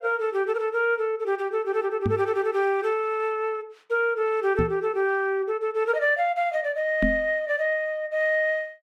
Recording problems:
microphone bump; at 2 s, at 4.5 s and at 7 s; peak +3 dB vs average level

